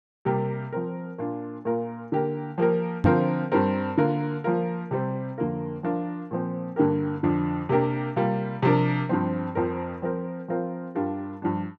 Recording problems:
microphone thump; at 3 s; peak +6 dB vs average level

